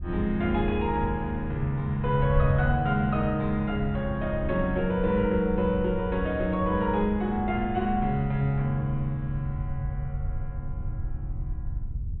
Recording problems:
treble missing; nothing above 4 kHz
wind on the microphone; below 92 Hz, SNR 8 dB

